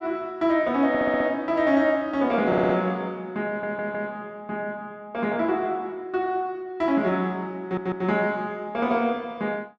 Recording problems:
audio stuttering; 4 times, first at 1 s

